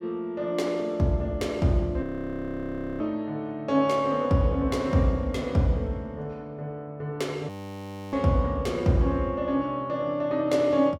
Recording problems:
frozen audio; at 2 s for 1 s and at 7.5 s for 0.5 s

